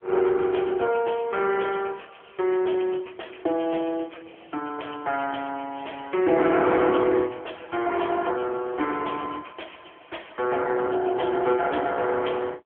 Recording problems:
phone line; 280 Hz to 3.3 kHz, AMR-NB

